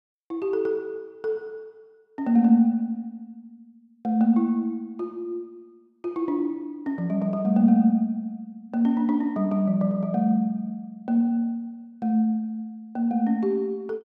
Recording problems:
none

